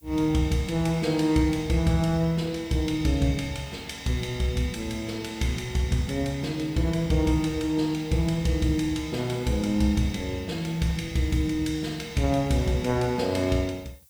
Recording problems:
background hiss; slope +3 dB per octave, SNR 29 dB

